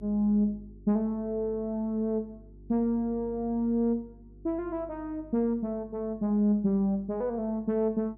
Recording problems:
hum; 50 Hz, harmonics up to 400 Hz, SNR 22 dB

